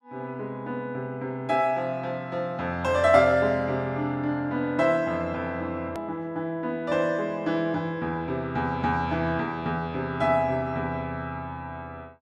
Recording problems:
hard cut with a click; at 6 s

